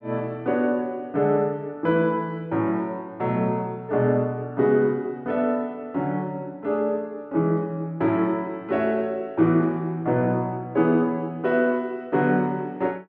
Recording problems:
none

